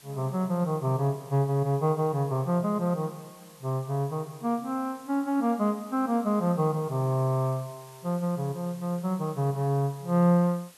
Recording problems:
background hiss; slope -1 dB per octave, SNR 24 dB

